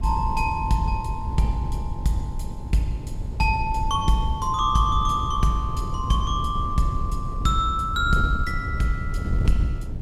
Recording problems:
wind noise; below 110 Hz, SNR 5 dB

